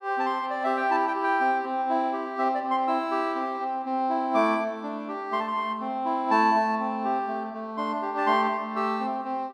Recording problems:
none

